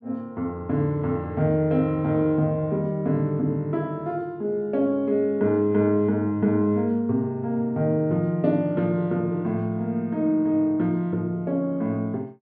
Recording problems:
none

